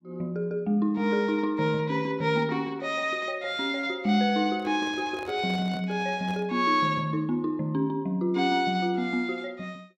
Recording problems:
handling noise; from 4.5 to 6.5 s; peak -11 dB vs average level

